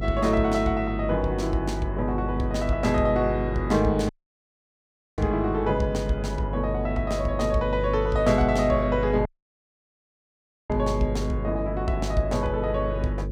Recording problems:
hum; 50 Hz, harmonics up to 550 Hz, SNR 6 dB
audio cutting out; at 4 s for 1 s and at 9.5 s for 1.5 s

